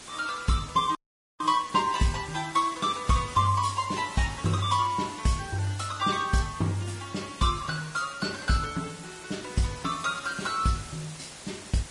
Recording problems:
lossy compression; MP3, then Vorbis, log-spectral distance 10 dB, nothing above 10.4 kHz
hiss; slope -1 dB per octave, SNR 15 dB
audio cutting out; at 1 s

